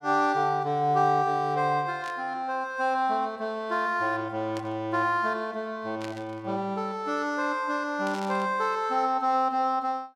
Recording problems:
burst of static; 4 times, first at 2 s; peak -9 dB vs average level

